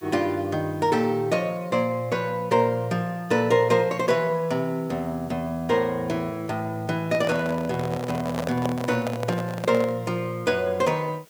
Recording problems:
background hiss; slope +2 dB per octave, SNR 28 dB
handling noise; from 7 to 10 s; peak 0 dB vs average level

